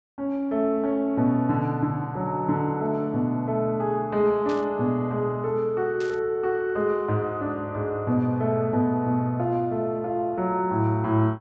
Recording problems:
treble missing; nothing above 8 kHz
static burst; at 4.5 s and at 6 s; peak -12 dB vs average level

